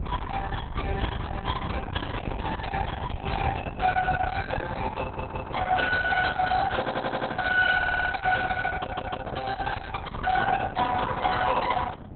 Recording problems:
codec artefacts; Opus, log-spectral distance 4 dB, nothing above 4 kHz
distortion; soft clipping, signal-to-distortion ratio 12 dB
rumble; below 730 Hz, SNR 9 dB
wind on the microphone; below 680 Hz, SNR 16 dB
stutter; 4 times, first at 5 s

